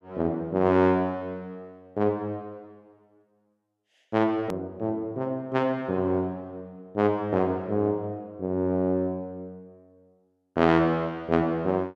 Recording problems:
click at an edit; at 4.5 s

